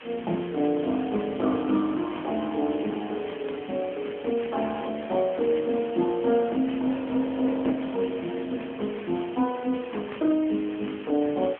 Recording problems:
phone line; 220 Hz to 3.2 kHz, AMR-NB
background hiss; SNR 17 dB

